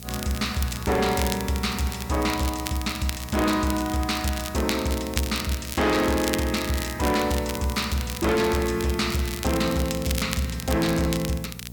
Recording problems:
distorted audio; hard clipping, signal-to-distortion ratio 11 dB
hum; 60 Hz, harmonics up to 720 Hz, SNR 14 dB
hiss; slope +4 dB per octave, SNR 20 dB
crackle; vinyl, SNR 9 dB

